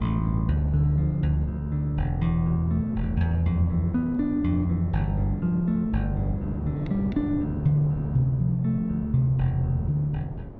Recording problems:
wind on the microphone; below 280 Hz, SNR 11 dB

